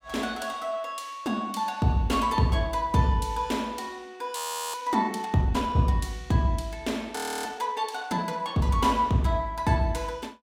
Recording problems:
audio freezing; at 4.5 s and at 7 s

